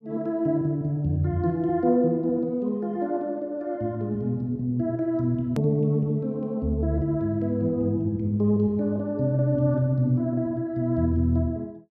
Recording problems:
hard cut with a click; at 5.5 s

